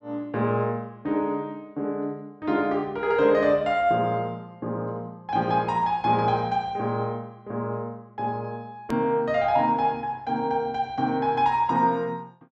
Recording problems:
hard cut with a click; at 9 s

